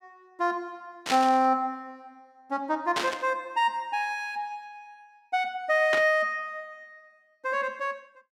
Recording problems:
static burst; at 1 s, at 3 s and at 6 s; peak +2 dB vs average level

